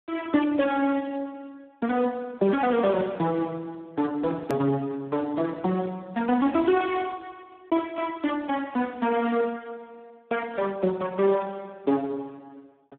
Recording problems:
telephone audio; 190 Hz to 3.5 kHz, Speex
edit click; at 4.5 s

